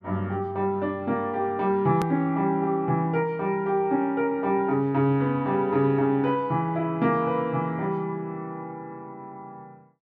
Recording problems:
hard cut with a click; at 2 s

